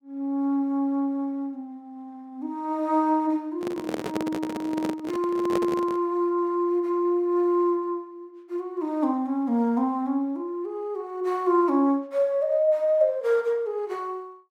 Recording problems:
microphone handling noise; from 3.5 to 6 s; peak 0 dB vs average level

